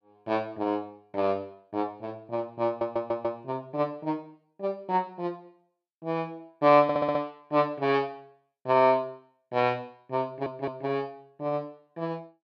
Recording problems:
audio stuttering; at 2.5 s, at 7 s and at 10 s

